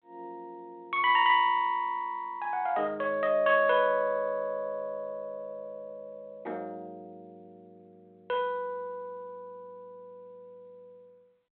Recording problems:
telephone audio; 320 Hz to 3.7 kHz, G.726

